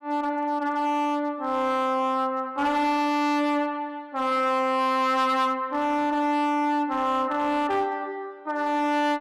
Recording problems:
distortion; hard clipping, signal-to-distortion ratio 10 dB

